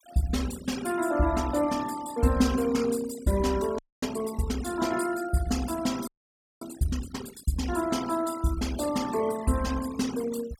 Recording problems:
noise reduction artefacts; signal-to-artefact ratio 15 dB
frozen audio; at 4 s and at 6 s for 0.5 s

